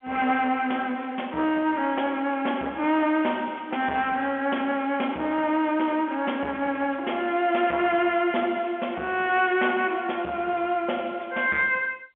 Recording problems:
telephone audio; 280 Hz to 3.3 kHz, G.711
distorted audio; soft clipping, signal-to-distortion ratio 13 dB

